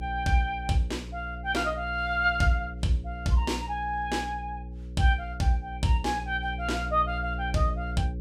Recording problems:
electrical hum; 60 Hz, harmonics up to 540 Hz, SNR 9 dB

